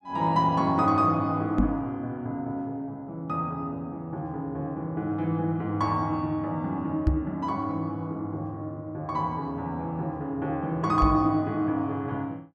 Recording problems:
knock on the microphone; at 1.5 s, at 7 s and at 11 s; peak +8 dB vs average level

